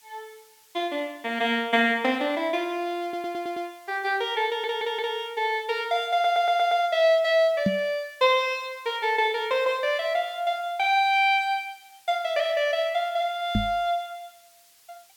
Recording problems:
hiss; slope +3 dB per octave, SNR 30 dB
stutter; at 3 s, at 4.5 s and at 6 s
microphone thump; at 7.5 s and at 14 s; peak +4 dB vs average level

